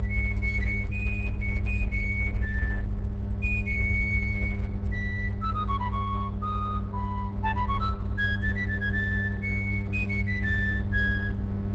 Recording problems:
lossy compression; Opus, log-spectral distance 2 dB, nothing above 7.6 kHz
hum; 50 Hz, harmonics up to 600 Hz, SNR 3 dB
rumble; below 70 Hz, strongest tone 62 Hz, SNR 2 dB

